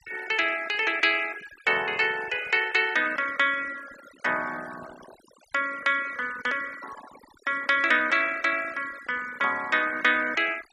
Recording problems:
noise reduction artefacts; signal-to-artefact ratio 17 dB

